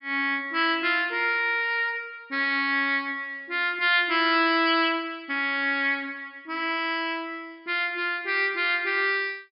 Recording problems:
treble missing; nothing above 5.5 kHz

